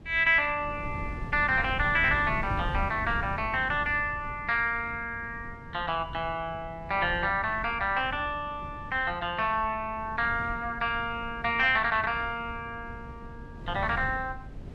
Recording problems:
wind noise; below 180 Hz, SNR 13 dB

